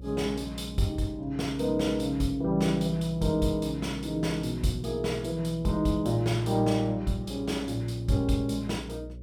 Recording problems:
electrical hum; 60 Hz, harmonics up to 600 Hz, SNR 15 dB

